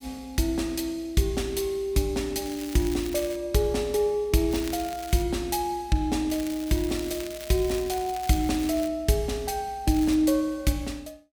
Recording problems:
crackle; 4 times, first at 2.5 s; loose cable, SNR 15 dB

